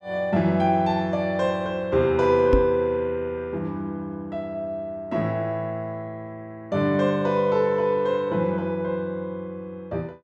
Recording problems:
microphone bump; at 2.5 s; peak +5 dB vs average level

